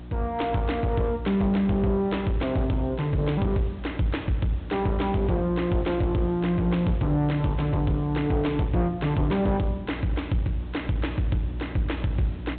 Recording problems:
low-pass filter; nothing above 4 kHz
distorted audio; soft clipping, signal-to-distortion ratio 10 dB
hum; 60 Hz, harmonics up to 360 Hz, SNR 13 dB
background hiss; SNR 25 dB

